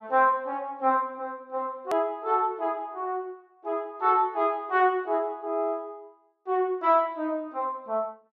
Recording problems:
hard cut with a click; at 2 s

